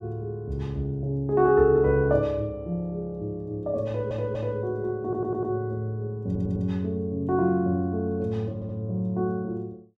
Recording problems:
audio stuttering; 4 times, first at 4 s

